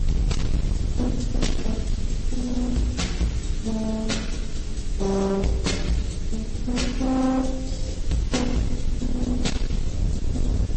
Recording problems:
codec artefacts; AAC, then MP3, log-spectral distance 4 dB, nothing above 8.2 kHz
distortion; hard clipping, uneven, signal-to-distortion ratio 5 dB
hum; 60 Hz, harmonics up to 420 Hz, SNR 15 dB
background hiss; slope 0 dB per octave, SNR 17 dB
rumble; below 80 Hz, SNR 3 dB

